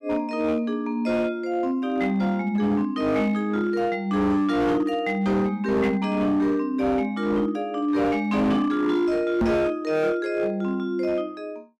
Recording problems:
distorted audio; hard clipping, signal-to-distortion ratio 11 dB
microphone bump; at 9.5 s; peak +4 dB vs average level

